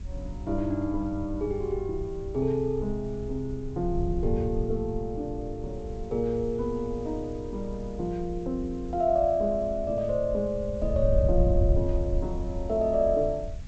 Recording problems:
lossy compression; G.722, log-spectral distance 2 dB
background hiss; slope +1 dB per octave, SNR 29 dB
wind noise; below 84 Hz, SNR 6 dB

